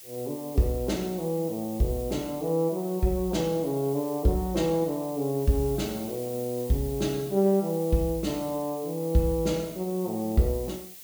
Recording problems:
background hiss; SNR 15 dB

